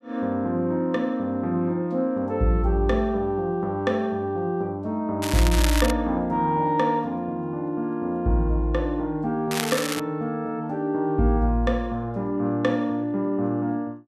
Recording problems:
crackle; at 5 s and at 9.5 s; loose cable, SNR 5 dB

